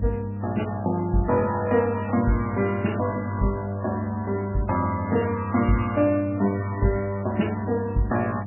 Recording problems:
lossy compression; MP3, log-spectral distance 3 dB, nothing above 2.4 kHz
hum; 50 Hz, harmonics up to 500 Hz, SNR 7 dB

